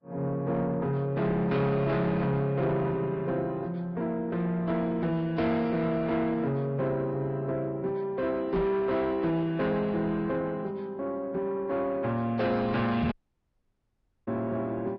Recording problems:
lossy codec; Vorbis, log-spectral distance 2 dB
distorted audio; soft clipping, signal-to-distortion ratio 11 dB
knock on the microphone; at 8.5 s and at 13 s; peak +2 dB vs average level
dropout; at 13 s for 1 s

